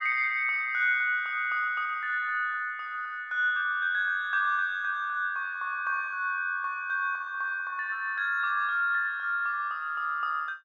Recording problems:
none

